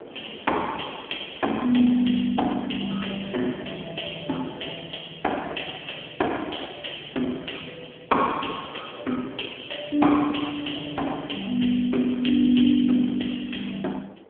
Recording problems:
telephone audio; 220 Hz to 3.6 kHz, AMR-NB
wind noise; below 640 Hz, SNR 21 dB

